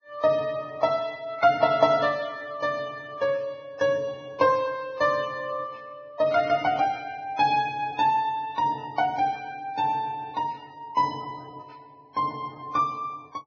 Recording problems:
lossy compression; Vorbis, log-spectral distance 2 dB, nothing above 6.2 kHz

